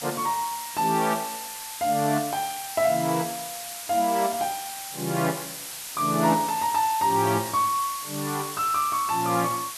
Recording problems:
hiss; slope +3 dB per octave, SNR 8 dB

